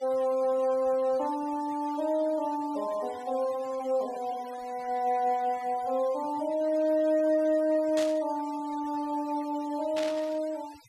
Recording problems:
denoising artefacts; signal-to-artefact ratio 22 dB
static burst; at 8 s and at 10 s; peak -5 dB vs average level

